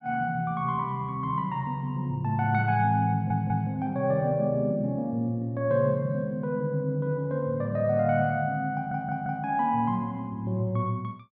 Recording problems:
low-pass filter; nothing above 8 kHz
audio stuttering; at 3 s and at 8.5 s

